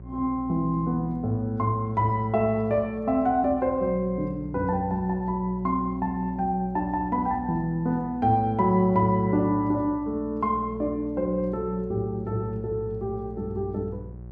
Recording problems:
hum; 60 Hz, harmonics up to 600 Hz, SNR 16 dB

